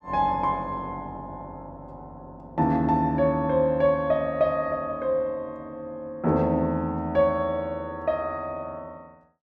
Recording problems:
none

